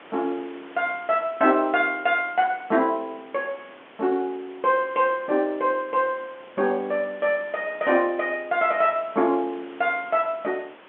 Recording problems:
telephone audio; 220 Hz to 3.5 kHz, G.711
hiss; SNR 22 dB

